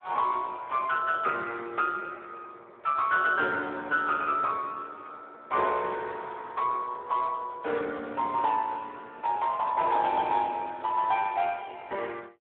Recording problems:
phone line; 320 Hz to 3.7 kHz, Speex

